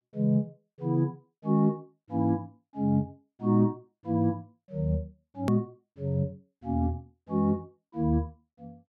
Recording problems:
edit click; at 5.5 s

